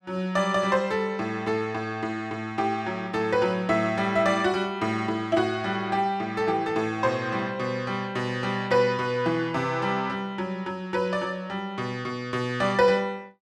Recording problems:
none

